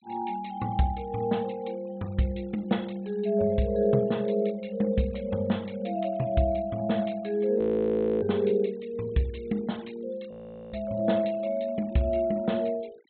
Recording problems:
treble missing; nothing above 4 kHz
noise reduction artefacts; signal-to-artefact ratio 27 dB
audio freezing; at 7.5 s for 0.5 s and at 10 s

